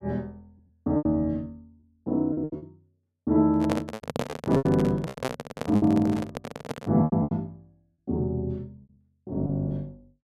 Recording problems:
packet loss; 12% of the sound replaced, filled with repeated pitch periods
handling noise; from 3.5 to 7 s; peak +2 dB vs average level

